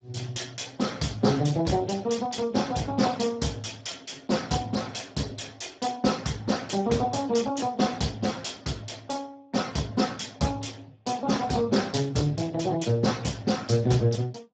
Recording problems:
lossy compression; Speex, log-spectral distance 5 dB, nothing above 7.3 kHz

